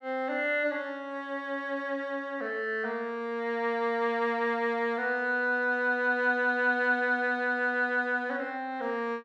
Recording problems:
none

